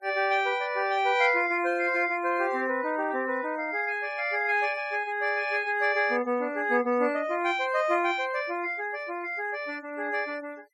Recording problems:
noise reduction artefacts; signal-to-artefact ratio 26 dB

